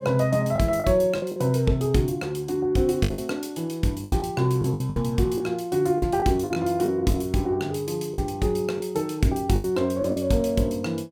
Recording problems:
packet loss; 8% of the sound replaced, filled with the last packet

